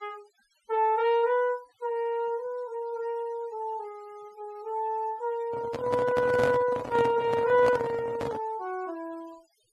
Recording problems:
noise reduction artefacts; signal-to-artefact ratio 23 dB
handling noise; from 5.5 to 8.5 s; peak +2 dB vs average level

